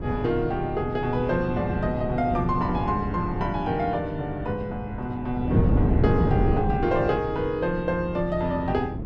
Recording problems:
wind on the microphone; below 250 Hz, SNR 2 dB

